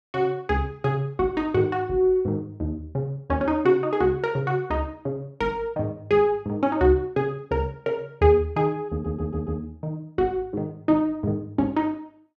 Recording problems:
stutter; at 9 s

